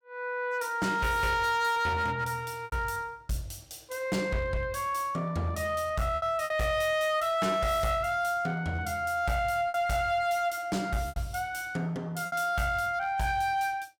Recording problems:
distorted audio; hard clipping, signal-to-distortion ratio 11 dB
packet loss; 4% of the sound replaced, filled with repeated pitch periods

